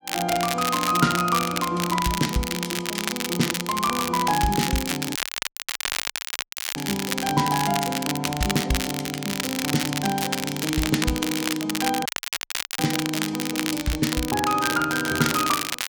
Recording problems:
crackling; vinyl, SNR 3 dB
dropout; at 5 s for 1.5 s and at 12 s for 0.5 s

